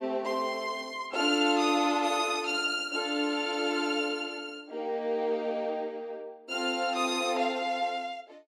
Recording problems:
none

